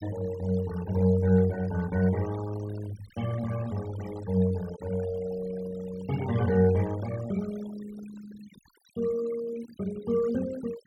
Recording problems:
noise reduction artefacts; signal-to-artefact ratio 17 dB

